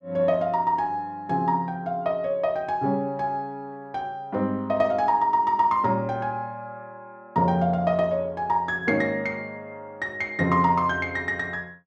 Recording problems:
none

